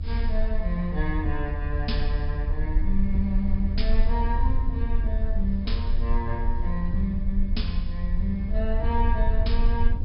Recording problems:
treble missing; nothing above 5.5 kHz
hiss; SNR 26 dB
rumble; below 60 Hz, strongest tone 22 Hz, SNR -3 dB

